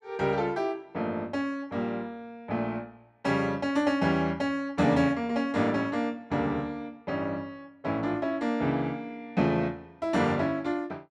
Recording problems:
none

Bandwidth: 12.5 kHz